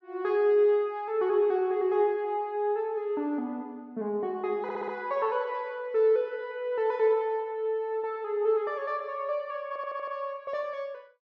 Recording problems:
audio stuttering; at 4.5 s and at 9.5 s

